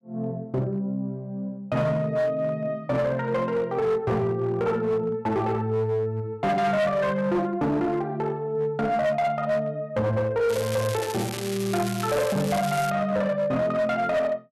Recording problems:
distortion; hard clipping, signal-to-distortion ratio 11 dB
crackling; from 10 to 13 s; loose cable, SNR 10 dB

